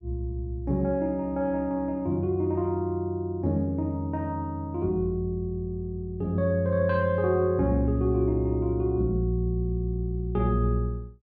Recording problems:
none

